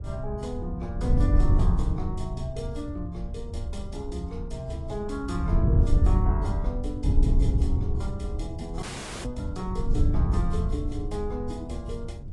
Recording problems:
codec artefacts; AAC, log-spectral distance 2 dB, nothing above 11 kHz
wind on the microphone; below 96 Hz, SNR -6 dB
dropout; at 9 s

